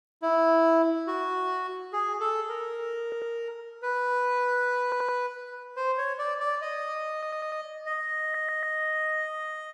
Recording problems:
audio stuttering; 4 times, first at 3 s

